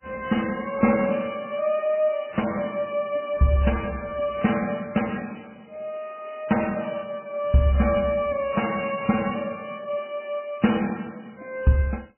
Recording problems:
lossy codec; MP3, log-spectral distance 7 dB, nothing above 2.9 kHz

